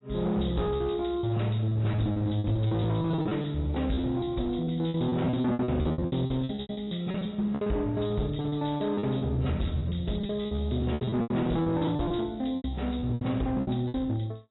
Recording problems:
codec artefacts; AAC, log-spectral distance 7 dB, nothing above 3.9 kHz
distorted audio; hard clipping, signal-to-distortion ratio 10 dB
packet loss; 18% of the sound replaced, filled with repeated pitch periods

